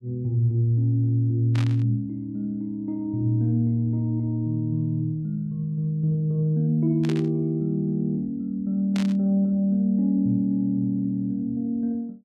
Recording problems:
static burst; at 1.5 s, at 7 s and at 9 s; peak -8 dB vs average level

